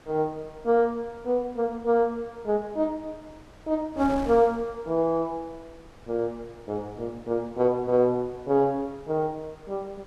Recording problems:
wind on the microphone; below 900 Hz, SNR 22 dB

